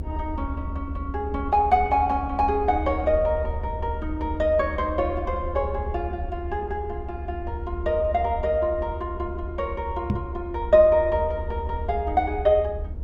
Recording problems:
rumble; below 76 Hz, SNR 8 dB
microphone bump; at 10 s; peak +3 dB vs average level

